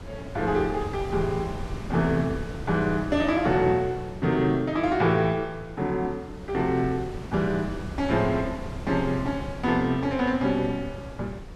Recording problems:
wind noise; below 300 Hz, SNR 12 dB

